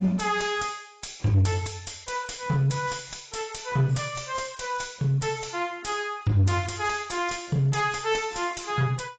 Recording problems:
lossy compression; AAC, log-spectral distance 6 dB, nothing above 7.6 kHz
distortion; soft clipping, signal-to-distortion ratio 11 dB

